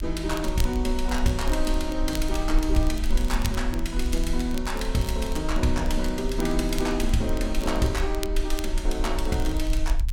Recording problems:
rumble; below 44 Hz, strongest tone 24 Hz, SNR 4 dB
crackle; vinyl, SNR 16 dB

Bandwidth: 16.5 kHz